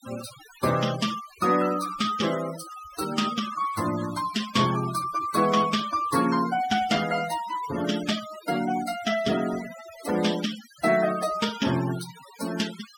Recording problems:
noise reduction artefacts; signal-to-artefact ratio 12 dB

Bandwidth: 17.5 kHz